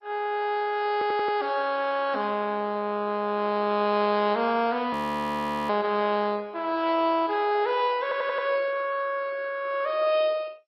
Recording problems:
codec artefacts; MP2, log-spectral distance 4 dB, nothing above 14.1 kHz
stutter; at 1 s and at 8 s
frozen audio; at 5 s for 1 s

